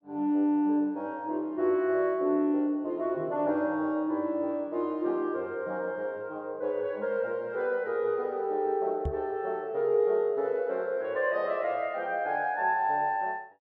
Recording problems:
knock on the microphone; at 9 s; peak 0 dB vs average level

